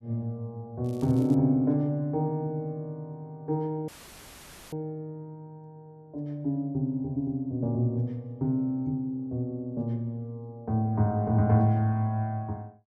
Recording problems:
crackle; at 1 s; loose cable, SNR 27 dB
audio cutting out; at 4 s for 1 s; filled with static

